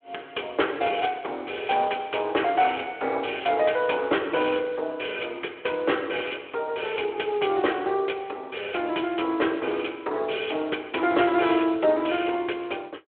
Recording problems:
phone line; 300 Hz to 3.4 kHz, Speex

